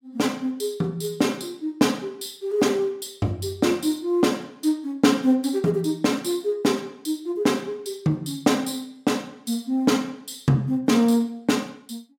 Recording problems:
none

